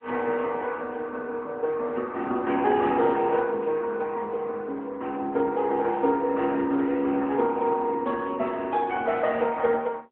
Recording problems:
telephone audio; 240 Hz to 3.4 kHz, AMR-NB

